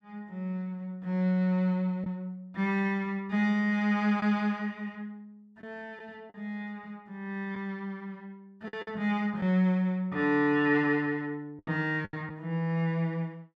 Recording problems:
lost packets; 3% of the sound replaced, filled with the last packet

